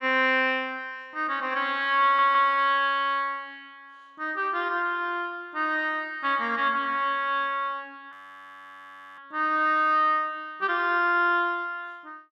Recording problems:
stutter; at 2 s
audio freezing; at 8 s for 1 s

